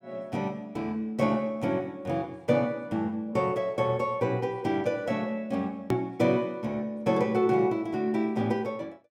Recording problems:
click at an edit; at 6 s

